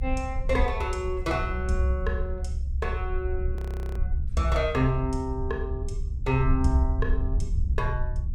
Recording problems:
low-frequency rumble; below 68 Hz, SNR 1 dB
frozen audio; at 3.5 s

